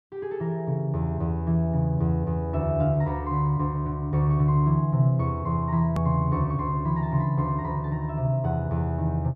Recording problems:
edit click; at 6 s

